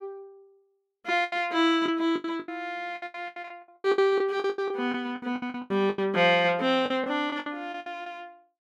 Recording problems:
lost packets; 18% of the sound replaced, filled with the last packet

